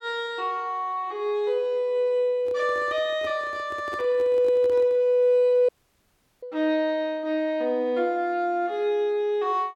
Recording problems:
microphone handling noise; from 2.5 to 5 s; peak -9 dB vs average level
dropout; at 5.5 s for 0.5 s

